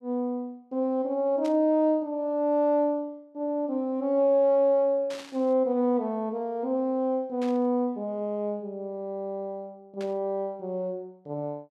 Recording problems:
burst of static; 4 times, first at 1.5 s; peak -12 dB vs average level

